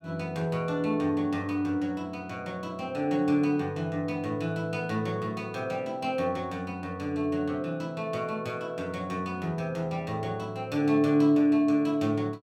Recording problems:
none

